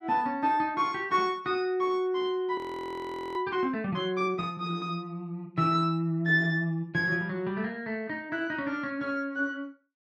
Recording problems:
audio freezing; at 2.5 s for 1 s

